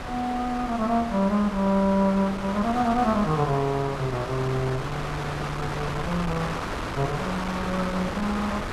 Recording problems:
wind noise; below 1.6 kHz, SNR 6 dB

